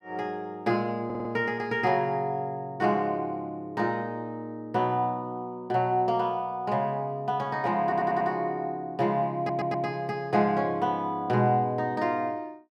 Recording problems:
stutter; at 1 s, at 8 s and at 9.5 s

